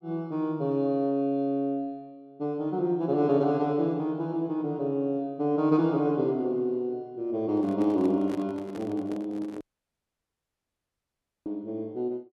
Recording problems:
microphone handling noise; from 7.5 to 9.5 s; peak -8 dB vs average level
audio cutting out; at 9.5 s for 2 s

